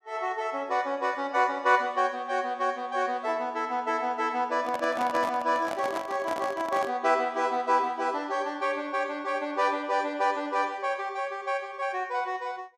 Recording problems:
handling noise; from 4.5 to 7 s; peak -2 dB vs average level

